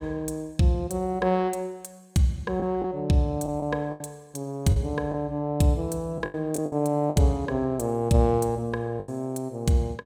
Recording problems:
lost packets; 6% of the sound replaced, filled with the last packet

